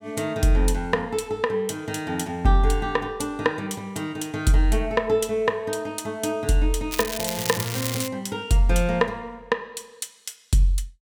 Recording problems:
crackling; from 7 to 8 s; loose cable, SNR 5 dB

